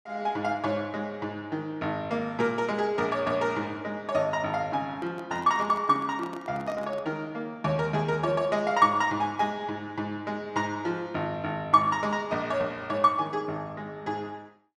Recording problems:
handling noise; from 5 to 7 s; peak -10 dB vs average level

